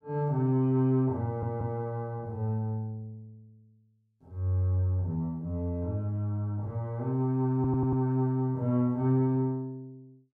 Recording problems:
audio stuttering; at 1.5 s and at 7.5 s

